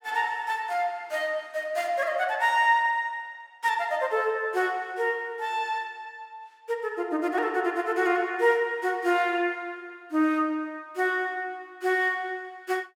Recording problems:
none

